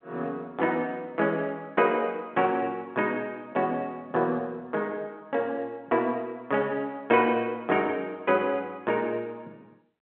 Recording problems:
phone line; 190 Hz to 3.3 kHz, G.711

